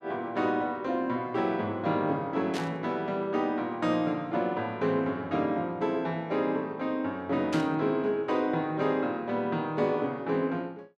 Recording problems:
burst of static; at 2.5 s and at 7.5 s; peak -4 dB vs average level

